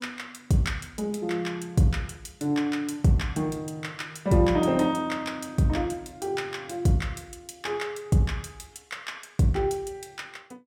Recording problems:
none

